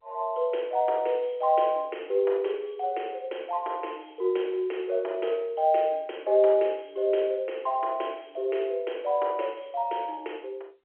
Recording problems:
telephone audio; 320 Hz to 3.3 kHz, G.711

